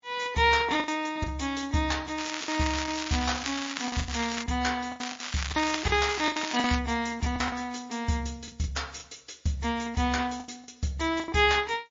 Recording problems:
lossy compression; MP3, log-spectral distance 9 dB
lost packets; 9% of the sound replaced, filled with the last packet
crackle; from 2 to 4.5 s and from 5 to 7 s; loose cable, SNR 6 dB

